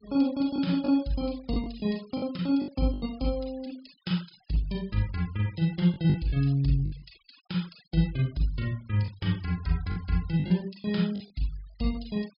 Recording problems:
low-pass filter; nothing above 5.5 kHz
denoising artefacts; signal-to-artefact ratio 24 dB
lost packets; 6% of the sound replaced, filled with the last packet

